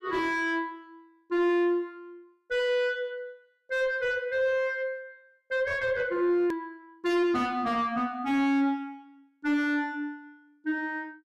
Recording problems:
distorted audio; soft clipping, signal-to-distortion ratio 7 dB
edit click; at 6.5 s

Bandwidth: 14 kHz